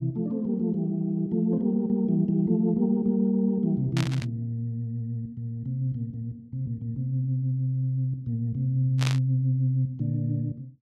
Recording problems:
burst of static; at 4 s and at 9 s; peak 0 dB vs average level

